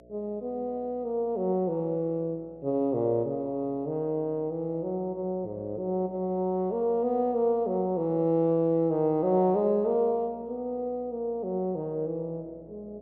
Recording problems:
hum; 60 Hz, harmonics up to 660 Hz, SNR 25 dB

